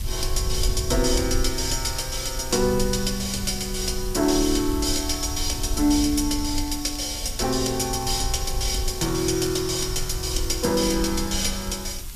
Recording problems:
hiss; slope +3 dB per octave, SNR 14 dB
low-frequency rumble; below 66 Hz, SNR 9 dB
crackle; vinyl, SNR 28 dB

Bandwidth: 14.5 kHz